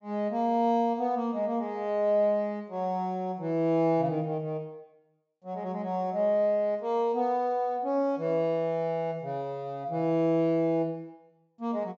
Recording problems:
treble missing; nothing above 8 kHz

